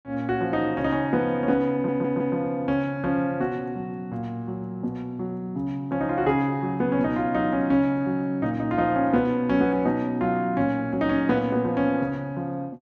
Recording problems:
audio stuttering; at 1.5 s

